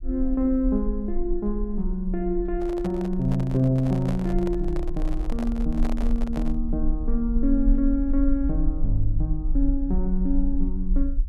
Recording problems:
low-frequency rumble; below 44 Hz, SNR 4 dB
microphone handling noise; from 2.5 to 6.5 s; peak -6 dB vs average level

